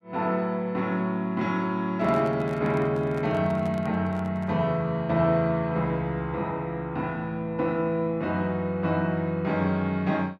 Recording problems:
handling noise; from 2 to 4.5 s; peak -11 dB vs average level

